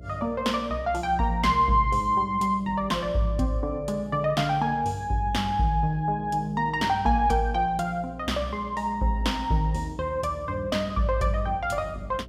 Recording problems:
mains hum; 60 Hz, harmonics up to 660 Hz, SNR 19 dB

